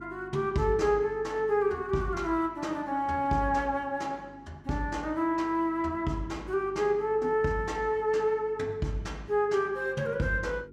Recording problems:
electrical hum; 50 Hz, harmonics up to 400 Hz, SNR 22 dB

